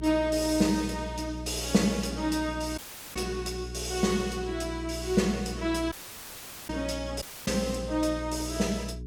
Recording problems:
hum; 60 Hz, harmonics up to 420 Hz, SNR 10 dB
audio cutting out; at 3 s, at 6 s for 1 s and at 7 s

